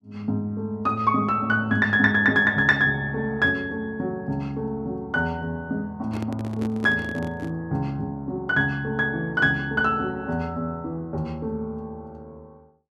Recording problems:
handling noise; from 6 to 7.5 s; peak -6 dB vs average level

